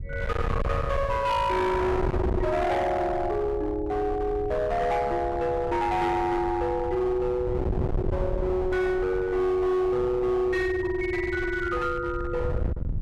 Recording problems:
distorted audio; hard clipping, signal-to-distortion ratio 8 dB
wind on the microphone; below 200 Hz, SNR 7 dB

